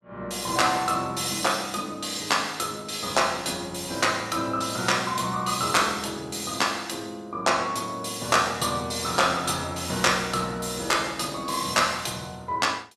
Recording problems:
none

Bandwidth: 14.5 kHz